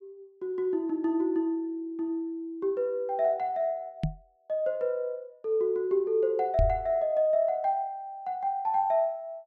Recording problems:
microphone thump; at 4 s and at 6.5 s; peak +4 dB vs average level

